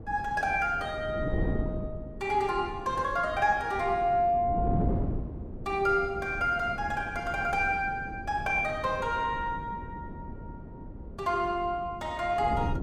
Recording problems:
wind on the microphone; below 280 Hz, SNR 9 dB

